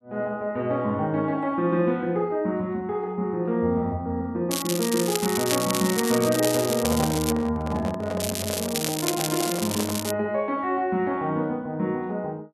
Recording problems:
crackling; from 4.5 to 7.5 s and from 8 to 10 s; loose cable, SNR 4 dB
handling noise; from 6 to 10 s; peak -1 dB vs average level

